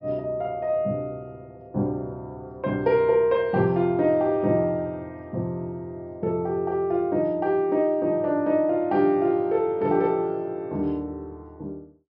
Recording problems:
treble cut off; nothing above 5.5 kHz

